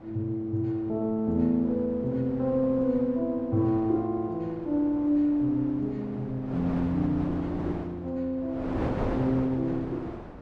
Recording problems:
wind noise; below 650 Hz, SNR 10 dB

